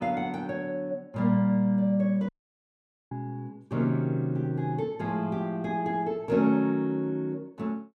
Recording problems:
audio cutting out; at 2.5 s for 1 s

